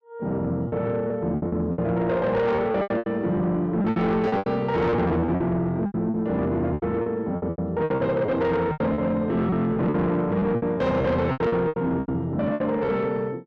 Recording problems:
distortion; soft clipping, signal-to-distortion ratio 10 dB
lost packets; 15% of the sound replaced, filled with repeated pitch periods

